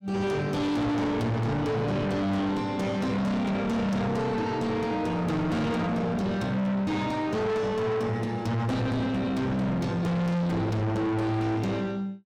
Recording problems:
distortion; soft clipping, signal-to-distortion ratio 6 dB

